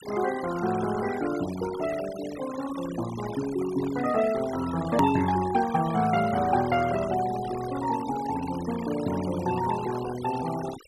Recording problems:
noise reduction artefacts; signal-to-artefact ratio 12 dB
click at an edit; at 5 s

